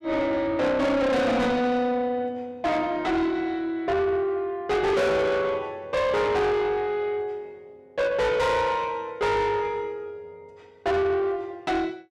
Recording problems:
distortion; soft clipping, signal-to-distortion ratio 6 dB

